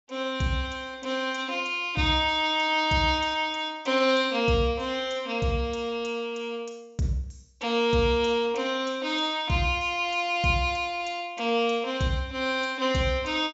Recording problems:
treble missing; nothing above 8 kHz

